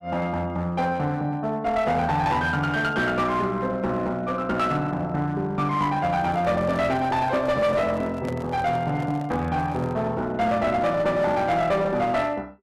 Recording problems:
distortion; hard clipping, uneven, signal-to-distortion ratio 10 dB
handling noise; from 6 to 10 s; peak -7 dB vs average level

